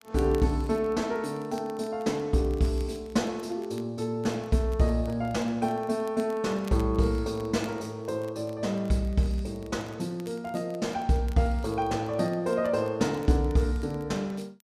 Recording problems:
crackling; vinyl, SNR 27 dB

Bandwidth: 14.5 kHz